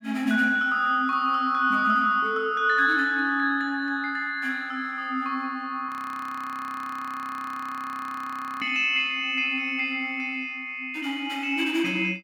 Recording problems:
audio freezing; at 6 s for 2.5 s

